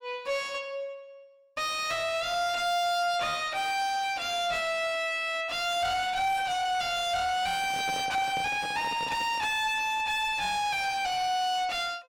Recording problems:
distorted audio; soft clipping, signal-to-distortion ratio 6 dB
microphone handling noise; from 7.5 to 9.5 s; peak -5 dB vs average level

